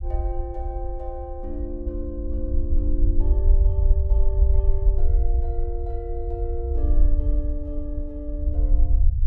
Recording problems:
rumble; below 58 Hz, SNR -10 dB

